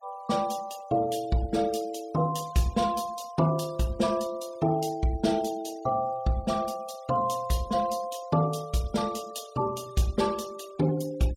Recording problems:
denoising artefacts; signal-to-artefact ratio 20 dB

